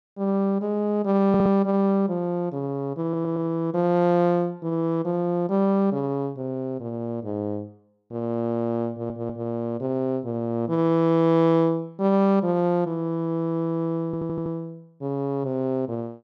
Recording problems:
stutter; 4 times, first at 1.5 s

